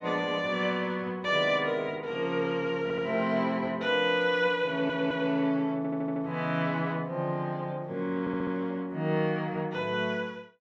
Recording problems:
stutter; 4 times, first at 3 s

